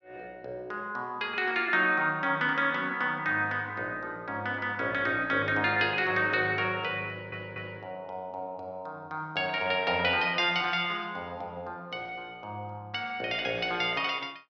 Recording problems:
audio stuttering; at 7 s

